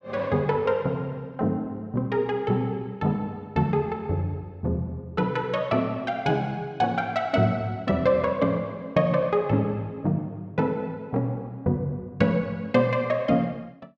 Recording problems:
none

